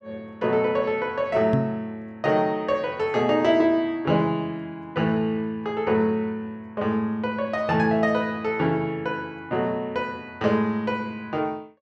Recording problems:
knock on the microphone; at 1.5 s; peak +4 dB vs average level

